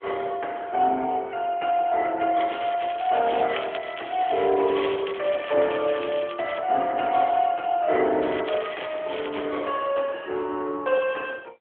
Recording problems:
phone line; 300 Hz to 3.3 kHz, AMR-NB
crackle; from 2.5 to 6.5 s and from 8 to 9.5 s; loose cable, SNR 15 dB

